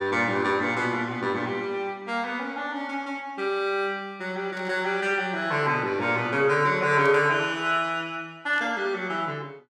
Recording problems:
static burst; at 4.5 s, at 7 s and at 8.5 s; peak -14 dB vs average level

